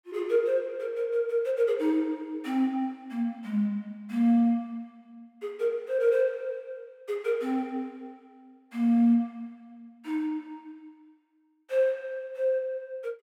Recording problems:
none

